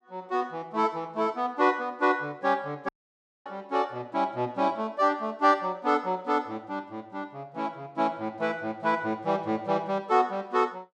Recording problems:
dropout; at 3 s for 0.5 s

